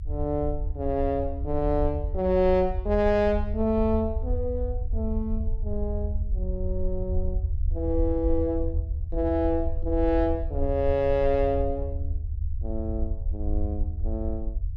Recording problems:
low-frequency rumble; below 78 Hz, SNR 4 dB

